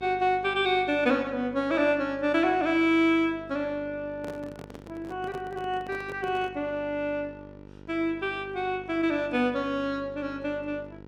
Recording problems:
hum; 50 Hz, harmonics up to 1.5 kHz, SNR 20 dB
microphone handling noise; from 4 to 6.5 s; peak -9 dB vs average level

